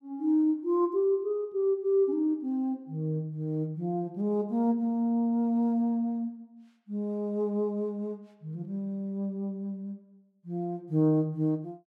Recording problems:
none

